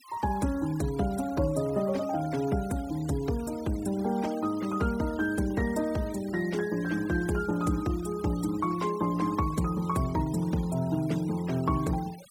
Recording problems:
noise reduction artefacts; signal-to-artefact ratio 19 dB

